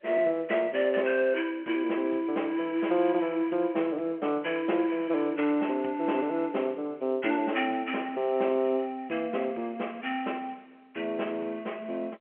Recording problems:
phone line; 280 Hz to 3.2 kHz, G.711

